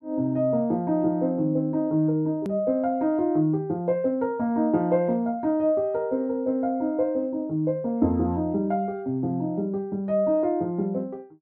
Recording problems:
edit click; at 2.5 s

